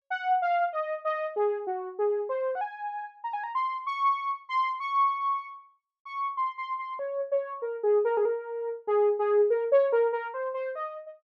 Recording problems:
none

